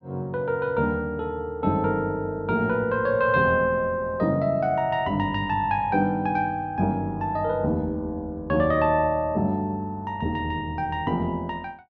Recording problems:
none

